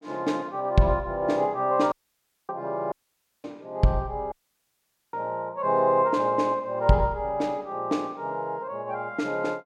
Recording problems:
audio cutting out; at 2 s for 0.5 s, at 3 s for 0.5 s and at 4.5 s for 1 s

